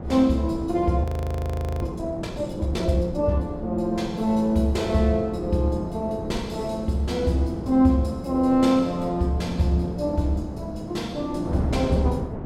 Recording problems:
wind noise; below 380 Hz, SNR 10 dB
audio freezing; at 1 s for 1 s

